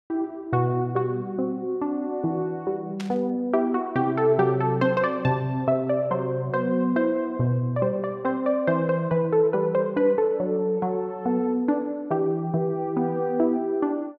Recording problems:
burst of static; at 3 s; peak -9 dB vs average level

